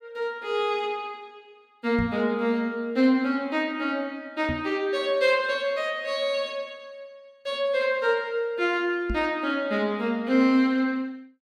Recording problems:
microphone bump; at 2 s, at 4.5 s and at 9 s; peak -1 dB vs average level

